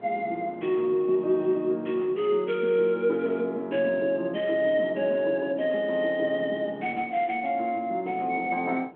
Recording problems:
phone line; 190 Hz to 3.4 kHz, G.726
wind on the microphone; below 570 Hz, SNR 21 dB

